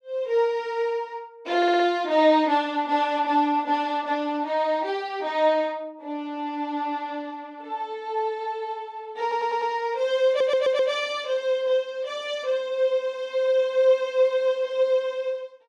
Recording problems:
audio stuttering; at 1.5 s, at 9 s and at 10 s

